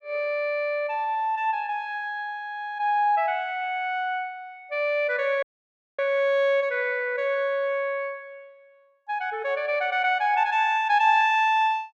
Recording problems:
dropout; at 5.5 s for 0.5 s

